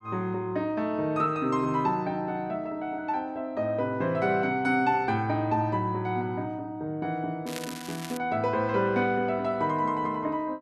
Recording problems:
crackling; at 7.5 s; loose cable, SNR 13 dB

